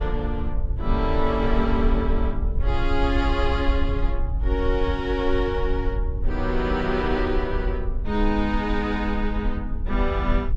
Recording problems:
low-frequency rumble; below 58 Hz, SNR 2 dB

